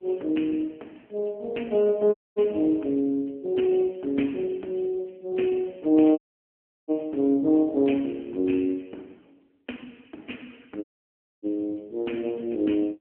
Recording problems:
phone line; 220 Hz to 3.2 kHz, AMR-NB
audio cutting out; at 2 s, at 6 s for 0.5 s and at 11 s for 0.5 s

